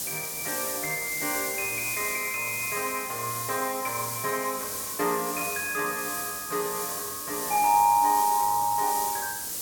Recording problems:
hiss; SNR 3 dB

